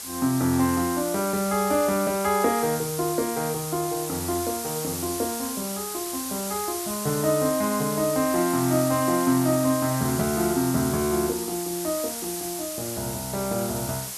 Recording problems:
background hiss; SNR 6 dB

